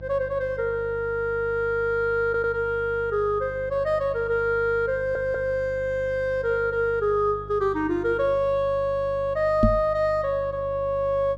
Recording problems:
mains hum; 50 Hz, harmonics up to 850 Hz, SNR 17 dB
audio stuttering; at 2.5 s and at 5 s
microphone bump; at 9.5 s; peak +7 dB vs average level

